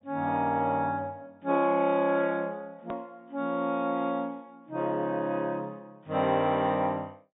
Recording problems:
treble missing; nothing above 4 kHz
hard cut with a click; at 3 s

